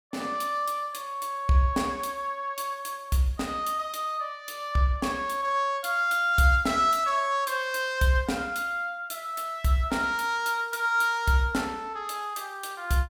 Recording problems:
none

